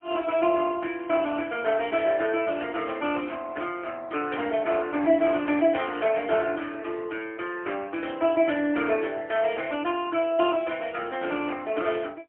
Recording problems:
telephone audio; 240 Hz to 3.1 kHz, AMR-NB, then MP3

